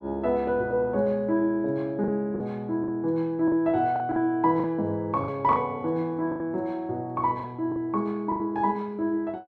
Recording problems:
packet loss; 6% of the sound replaced, filled with the last packet

